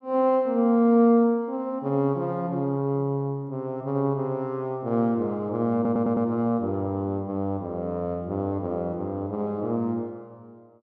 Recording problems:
audio stuttering; at 6 s

